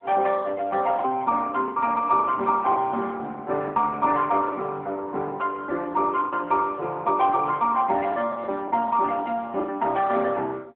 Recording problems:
telephone audio; 260 Hz to 2.8 kHz, AMR-NB
lost packets; 7% of the sound replaced, filled with the last packet

